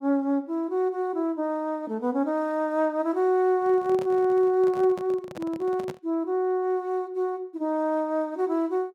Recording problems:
microphone handling noise; from 3.5 to 6 s; peak -7 dB vs average level

